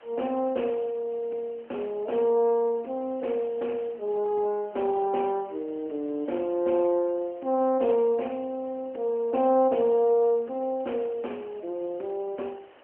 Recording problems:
telephone audio; 280 Hz to 3.1 kHz, AMR-NB
background hiss; SNR 27 dB

